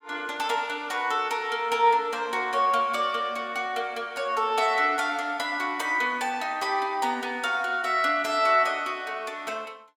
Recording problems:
none

